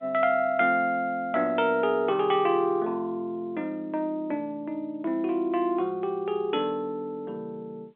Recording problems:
telephone audio; 260 Hz to 3.5 kHz, G.711

